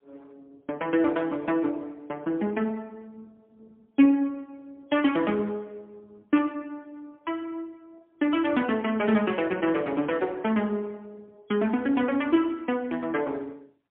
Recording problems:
phone line; 220 Hz to 3.5 kHz, AMR-NB, then MP3

